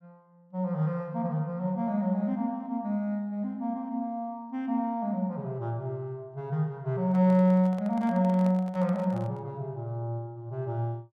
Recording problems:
microphone handling noise; from 7 to 9.5 s; peak -9 dB vs average level

